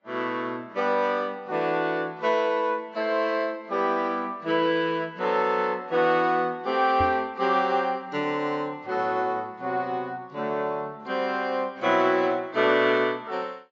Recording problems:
codec artefacts; AAC, log-spectral distance 2 dB, nothing above 6.2 kHz
microphone bump; at 7 s; peak -3 dB vs average level

